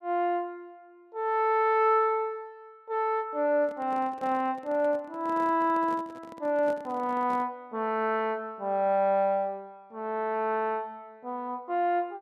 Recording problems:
handling noise; from 3.5 to 7.5 s; peak -11 dB vs average level

